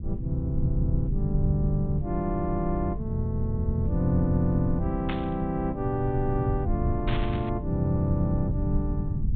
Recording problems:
treble cut off; nothing above 4 kHz
low-frequency rumble; below 120 Hz, SNR 3 dB
burst of static; at 5 s and at 7 s; peak -3 dB vs average level

